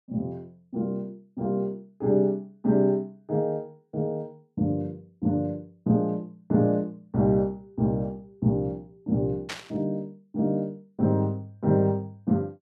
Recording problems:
static burst; at 9.5 s; peak -3 dB vs average level

